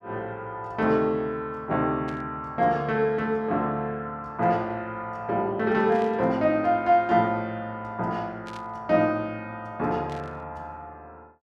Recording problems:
static burst; 4 times, first at 2 s; peak -14 dB vs average level

